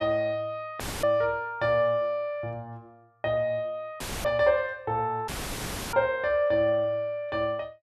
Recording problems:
audio cutting out; at 1 s, at 4 s and at 5.5 s for 0.5 s; filled with static

